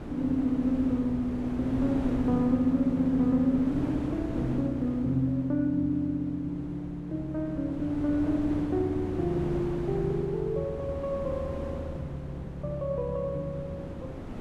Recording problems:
wind noise; below 420 Hz, SNR 9 dB

